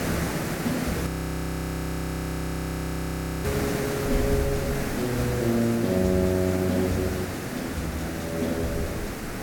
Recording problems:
background hiss; SNR 2 dB
wind on the microphone; below 82 Hz, SNR 9 dB
audio freezing; at 1 s for 2.5 s

